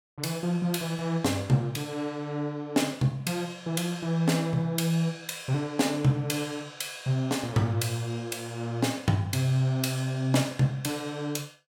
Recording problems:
none

